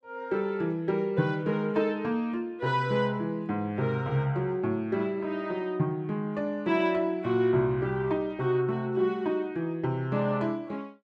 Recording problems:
none

